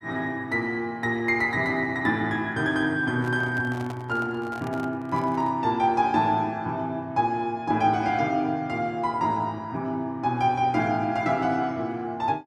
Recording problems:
handling noise; from 3 to 5.5 s; peak -9 dB vs average level

